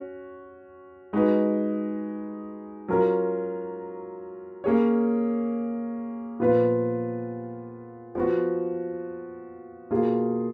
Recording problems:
none

